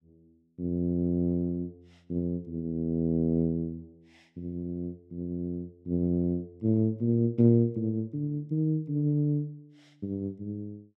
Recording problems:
none

